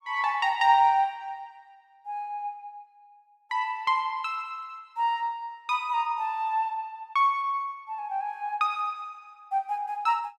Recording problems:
none

